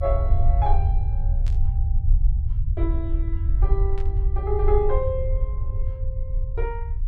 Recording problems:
low-frequency rumble; below 66 Hz, SNR -5 dB
burst of static; at 1.5 s and at 4 s; peak -11 dB vs average level

